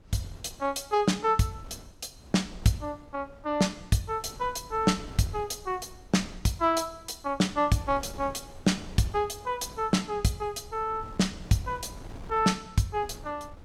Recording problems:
wind on the microphone; below 290 Hz, SNR 19 dB

